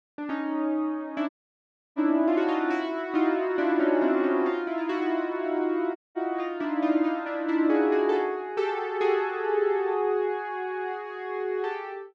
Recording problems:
audio cutting out; at 1.5 s for 0.5 s and at 6 s

